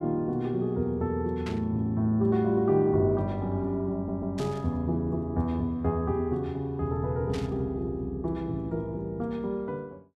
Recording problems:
static burst; at 1.5 s, at 4.5 s and at 7.5 s; peak -7 dB vs average level
stutter; at 4 s

